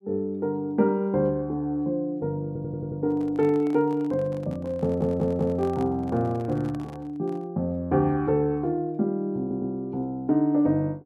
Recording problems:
audio stuttering; at 2.5 s, at 5 s and at 9.5 s
microphone handling noise; from 3 to 7.5 s; peak -12 dB vs average level

